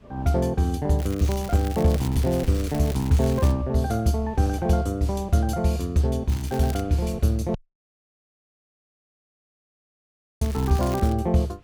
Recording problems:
wind noise; below 190 Hz, SNR 23 dB
crackle; from 1 to 3.5 s, at 6.5 s and at 10 s; loose cable, SNR 18 dB
dropout; at 7.5 s for 3 s

